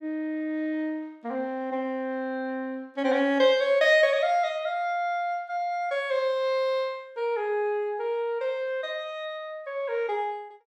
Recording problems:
none

